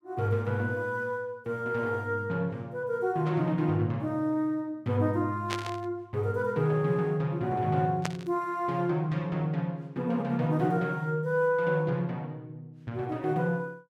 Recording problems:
burst of static; at 5.5 s and at 8 s; peak 0 dB vs average level

